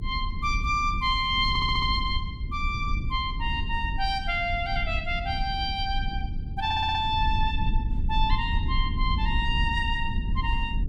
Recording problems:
rumble; below 78 Hz, SNR 4 dB
audio stuttering; at 1.5 s and at 6.5 s

